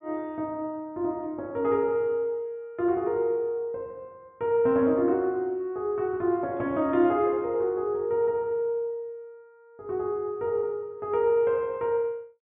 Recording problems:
low-pass filter; nothing above 3.7 kHz

